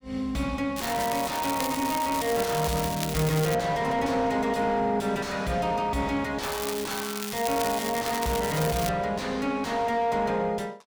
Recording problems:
distortion; soft clipping, signal-to-distortion ratio 6 dB
crackle; from 1 to 3.5 s and from 6.5 to 9 s; loose cable, SNR 7 dB

